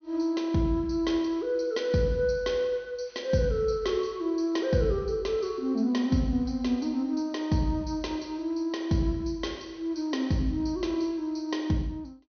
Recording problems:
treble cut off; nothing above 6.2 kHz

